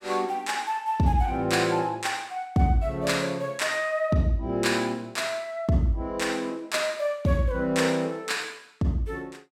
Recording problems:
none

